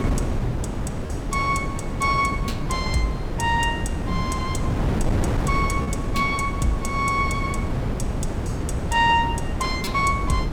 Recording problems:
wind on the microphone; below 290 Hz, SNR 2 dB
lost packets; 1.1% of the sound replaced, filled with repeated pitch periods

